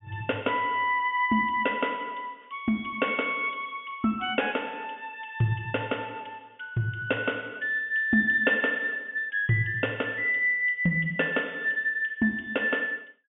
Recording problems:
treble missing; nothing above 3.4 kHz

